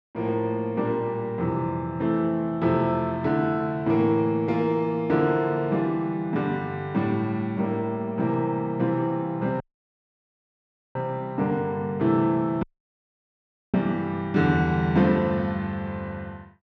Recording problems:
audio cutting out; at 9.5 s for 1.5 s and at 13 s for 1 s

